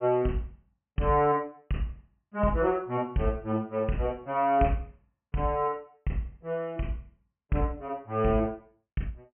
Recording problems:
low-pass filter; nothing above 3.1 kHz

